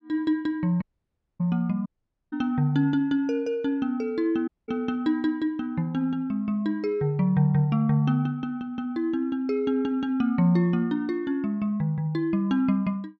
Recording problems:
audio cutting out; at 1 s for 0.5 s, at 2 s and at 4.5 s

